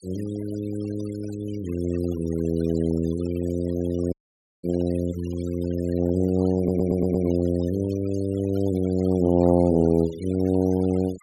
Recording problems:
denoising artefacts; signal-to-artefact ratio 21 dB
dropout; at 4 s for 0.5 s
stutter; at 6.5 s

